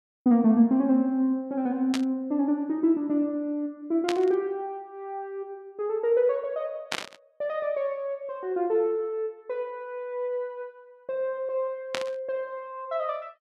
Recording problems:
burst of static; 4 times, first at 2 s; peak +2 dB vs average level

